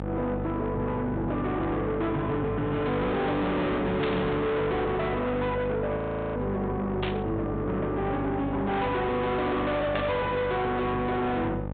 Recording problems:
treble missing; nothing above 4 kHz
distorted audio; soft clipping, signal-to-distortion ratio 6 dB
hum; 50 Hz, harmonics up to 1.3 kHz, SNR 5 dB
burst of static; at 4 s, at 7 s and at 10 s; peak -2 dB vs average level
audio freezing; at 6 s

